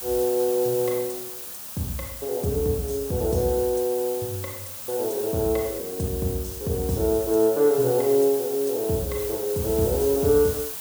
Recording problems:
background hiss; SNR 9 dB

